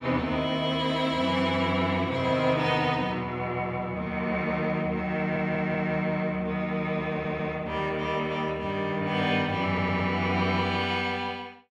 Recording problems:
audio stuttering; at 5 s, at 7 s and at 9.5 s

